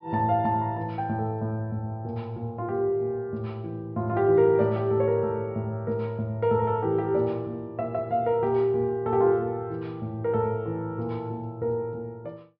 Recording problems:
treble cut off; nothing above 5.5 kHz

